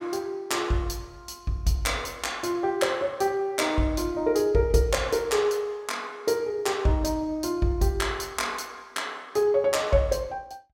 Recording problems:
none

